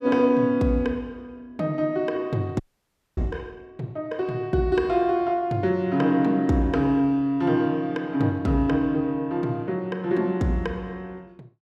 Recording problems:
audio freezing; at 2.5 s for 0.5 s

